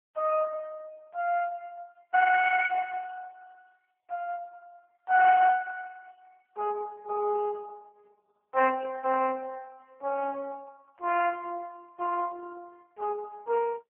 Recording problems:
phone line; 370 Hz to 2.9 kHz, AMR-NB

